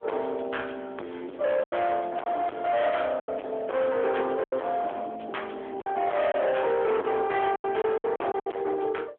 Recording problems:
phone line; 300 Hz to 3.4 kHz, AMR-NB
distortion; hard clipping, signal-to-distortion ratio 6 dB
lost packets; 7% of the sound replaced, filled with silence

